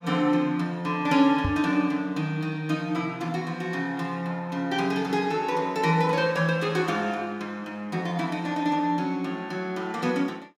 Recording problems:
knock on the microphone; at 1.5 s; peak +1 dB vs average level

